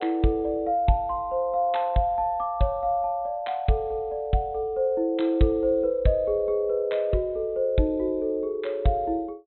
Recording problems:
treble cut off; nothing above 4 kHz

